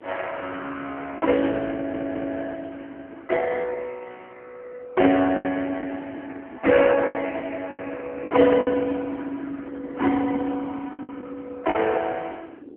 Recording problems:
phone line; 240 Hz to 3 kHz, AMR-NB
wind on the microphone; below 370 Hz, SNR 18 dB
lost packets; 5% of the sound replaced, filled with the last packet
audio stuttering; at 1.5 s

